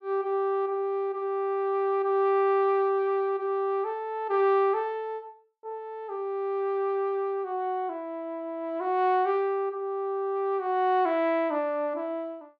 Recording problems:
none

